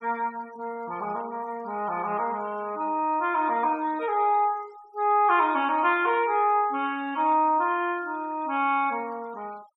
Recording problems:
noise reduction artefacts; signal-to-artefact ratio 25 dB

